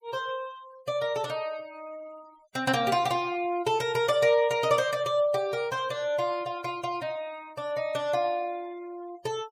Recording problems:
noise reduction artefacts; signal-to-artefact ratio 22 dB

